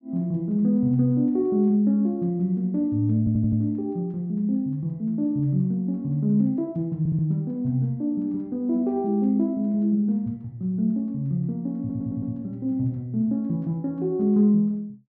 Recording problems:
audio stuttering; at 3 s, at 7 s and at 12 s

